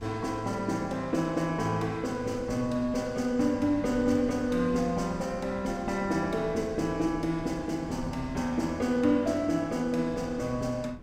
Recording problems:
wind on the microphone; below 190 Hz, SNR 17 dB

